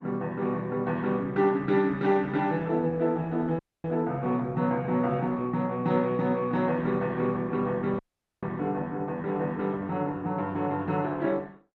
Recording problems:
lossy codec; Opus, log-spectral distance 2 dB
dropout; at 3.5 s and at 8 s

